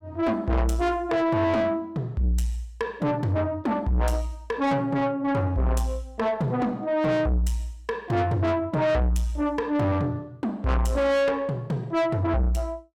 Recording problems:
distorted audio; soft clipping, signal-to-distortion ratio 7 dB

